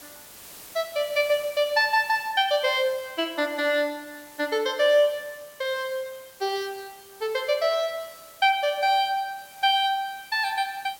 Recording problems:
hiss; slope -1 dB per octave, SNR 21 dB

